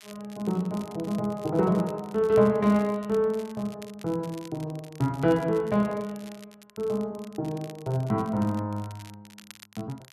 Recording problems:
crackle; vinyl, SNR 23 dB

